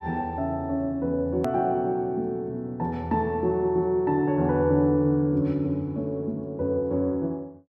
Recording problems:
click at an edit; at 1.5 s

